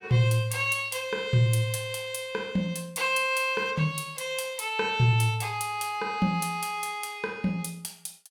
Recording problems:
none

